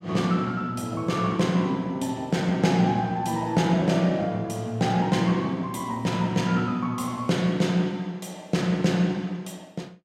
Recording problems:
none

